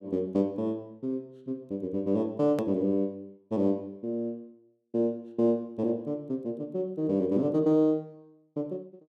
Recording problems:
hard cut with a click; at 2.5 s

